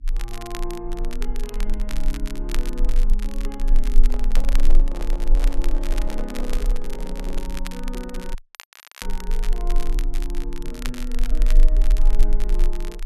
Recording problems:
hum; 60 Hz, harmonics up to 300 Hz, SNR 22 dB
rumble; below 30 Hz, strongest tone 20 Hz, SNR -9 dB
crackling; vinyl, SNR 5 dB
handling noise; from 4 to 7.5 s; peak +3 dB vs average level
dropout; at 8.5 s for 0.5 s

